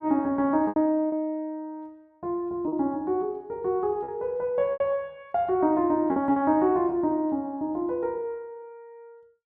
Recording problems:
lost packets; 4% of the sound replaced, filled with repeated pitch periods

